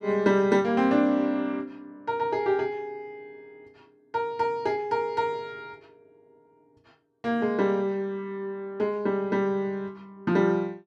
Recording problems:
none

